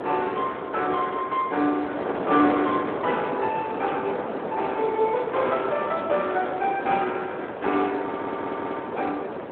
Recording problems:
phone line; 240 Hz to 3.8 kHz, Speex
wind on the microphone; below 890 Hz, SNR 5 dB
stutter; at 8 s

